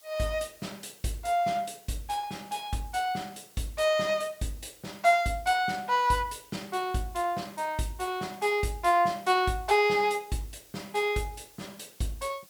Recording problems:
hiss; slope +1 dB per octave, SNR 25 dB

